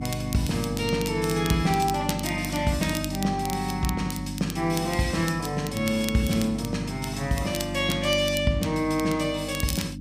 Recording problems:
hum; 50 Hz, harmonics up to 300 Hz, SNR 7 dB
crackling; vinyl, SNR 12 dB

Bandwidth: 15 kHz